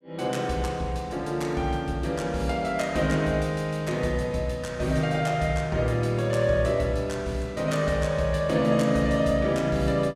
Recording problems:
none

